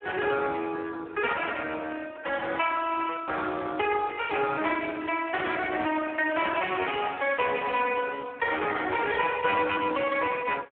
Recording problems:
phone line; 240 Hz to 3.7 kHz, Speex

